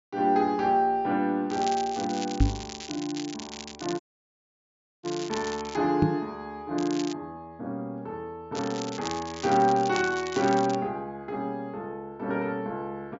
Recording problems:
low-pass filter; nothing above 7.3 kHz
crackle; from 1.5 to 6 s, at 7 s and from 8.5 to 11 s; loose cable, SNR 12 dB
microphone bump; at 2.5 s and at 6 s; peak +10 dB vs average level
dropout; at 4 s for 1 s

